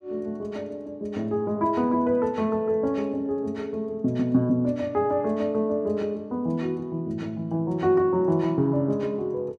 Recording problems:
none

